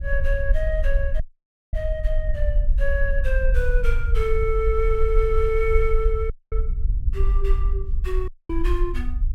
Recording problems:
rumble; below 50 Hz, SNR -2 dB
audio cutting out; at 1 s for 0.5 s, at 6.5 s and at 8.5 s

